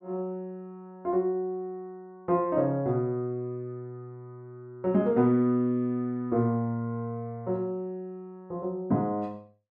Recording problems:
none

